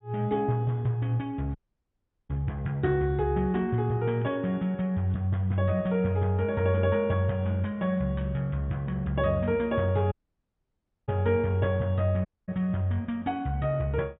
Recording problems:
treble cut off; nothing above 4 kHz
dropout; at 1.5 s for 0.5 s, at 10 s for 1 s and at 12 s

